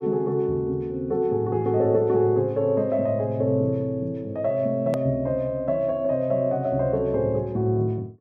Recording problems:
edit click; at 5 s

